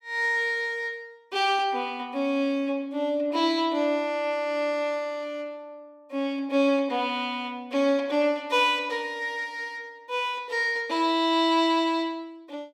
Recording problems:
none

